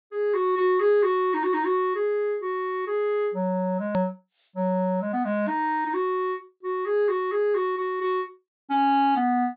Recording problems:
treble missing; nothing above 4.6 kHz
click at an edit; at 4 s

